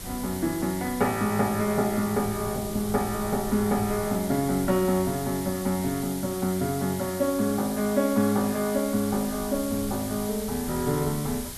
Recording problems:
hiss; slope +1 dB per octave, SNR 11 dB
wind noise; below 190 Hz, SNR 19 dB

